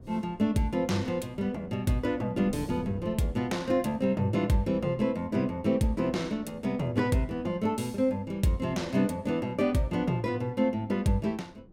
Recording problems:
wind on the microphone; below 280 Hz, SNR 19 dB

